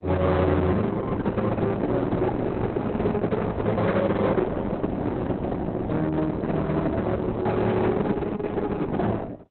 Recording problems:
codec artefacts; Opus, log-spectral distance 3 dB, nothing above 4 kHz
distortion; hard clipping, signal-to-distortion ratio 10 dB

